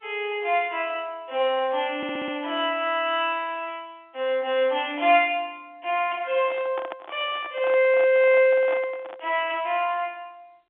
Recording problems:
telephone audio; 370 Hz to 3.6 kHz, G.711
stutter; at 2 s
handling noise; from 6.5 to 9.5 s; peak -7 dB vs average level

